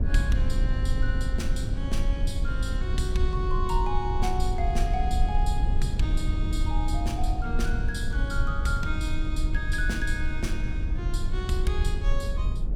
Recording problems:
low-frequency rumble; below 64 Hz, SNR -4 dB

